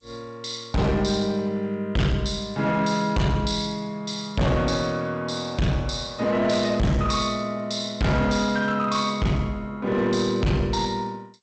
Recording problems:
lossy compression; G.722, log-spectral distance 3 dB, nothing above 8.2 kHz
distorted audio; hard clipping, uneven, signal-to-distortion ratio 7 dB

